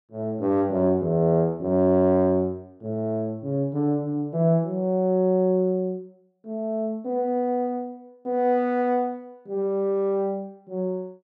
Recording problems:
none

